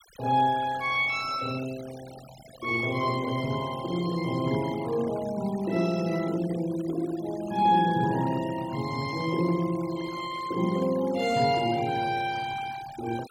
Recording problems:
denoising artefacts; signal-to-artefact ratio 18 dB

